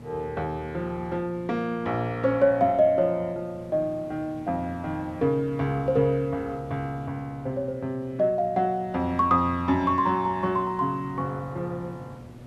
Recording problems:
electrical hum; 60 Hz, harmonics up to 960 Hz, SNR 20 dB
background hiss; slope -7 dB per octave, SNR 21 dB

